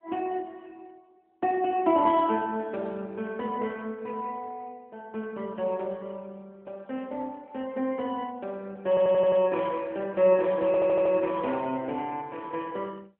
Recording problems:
phone line; 240 Hz to 3.7 kHz, AMR-NB
stutter; at 9 s and at 11 s

